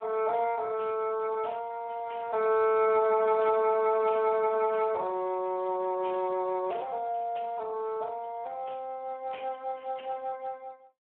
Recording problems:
telephone audio; 280 Hz to 2.7 kHz, Speex

